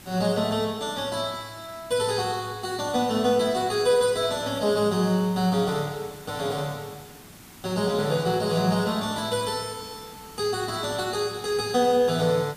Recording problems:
background hiss; SNR 20 dB

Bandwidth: 15 kHz